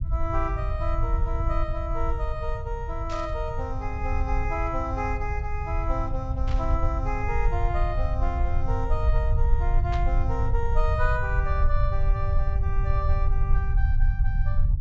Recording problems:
low-pass filter; nothing above 7.6 kHz
low-frequency rumble; below 68 Hz, SNR -4 dB
static burst; at 3 s, at 6.5 s and at 10 s; peak -3 dB vs average level

